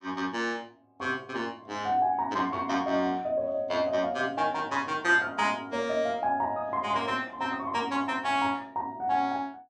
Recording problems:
none

